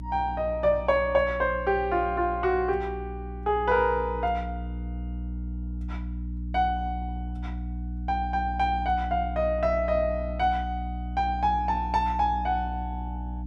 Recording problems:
hum; 60 Hz, harmonics up to 300 Hz, SNR 8 dB

